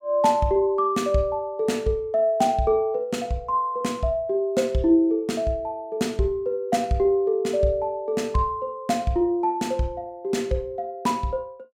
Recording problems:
none

